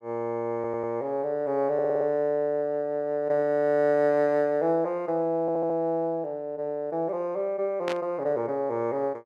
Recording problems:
stutter; at 0.5 s, at 1.5 s and at 5.5 s
static burst; at 8 s; peak -4 dB vs average level

